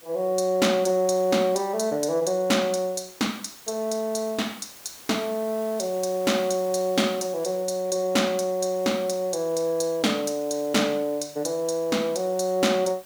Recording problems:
background hiss; slope -1 dB per octave, SNR 20 dB

